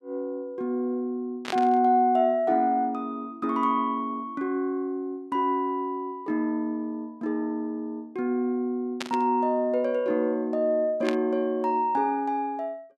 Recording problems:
burst of static; at 1.5 s, at 9 s and at 11 s; peak -2 dB vs average level

